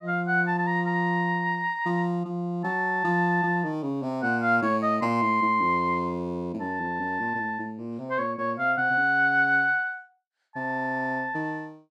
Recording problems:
none

